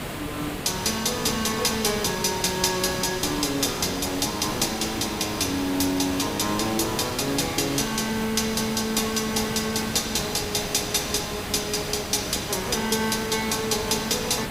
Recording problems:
background hiss; SNR 7 dB

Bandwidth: 15.5 kHz